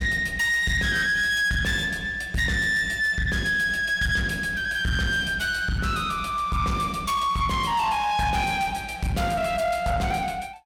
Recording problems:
distorted audio; soft clipping, signal-to-distortion ratio 10 dB

